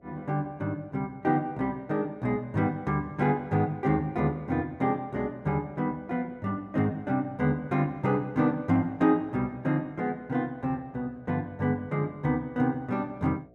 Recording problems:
electrical hum; 60 Hz, harmonics up to 720 Hz, SNR 28 dB

